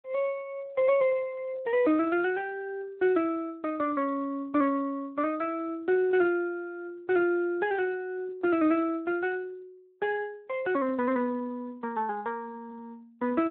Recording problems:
phone line; 260 Hz to 3.4 kHz, Speex

